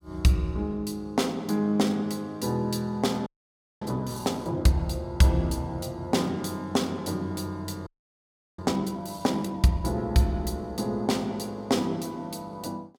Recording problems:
frozen audio; at 3.5 s for 0.5 s and at 8 s for 0.5 s

